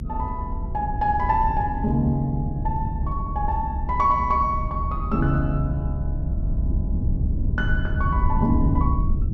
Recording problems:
low-frequency rumble; below 110 Hz, SNR 2 dB

